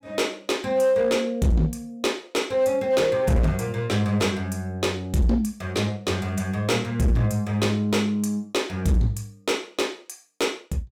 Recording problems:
distorted audio; hard clipping, uneven, signal-to-distortion ratio 10 dB

